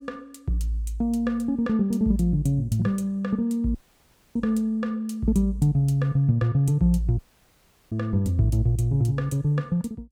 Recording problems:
audio cutting out; at 4 s for 0.5 s and at 7 s for 0.5 s

